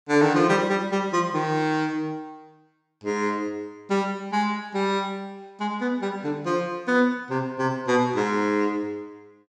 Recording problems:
none

